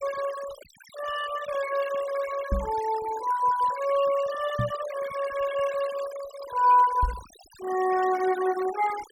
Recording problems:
noise reduction artefacts; signal-to-artefact ratio 15 dB
knock on the microphone; at 2.5 s, at 4.5 s and at 7 s; peak +2 dB vs average level

